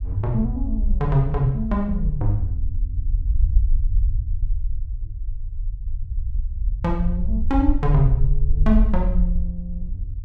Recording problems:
low-frequency rumble; below 54 Hz, SNR 1 dB

